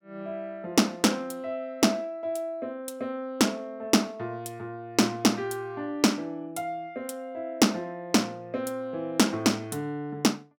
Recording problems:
none

